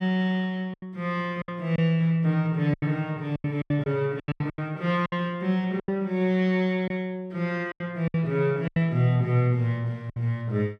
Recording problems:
packet loss; 10% of the sound replaced, filled with silence

